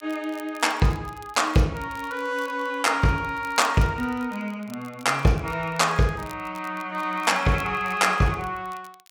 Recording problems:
crackling; vinyl, SNR 25 dB

